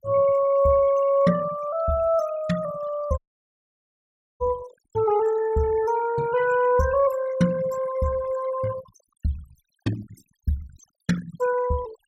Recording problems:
noise reduction artefacts; signal-to-artefact ratio 18 dB
audio cutting out; at 3 s for 1 s

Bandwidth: 16 kHz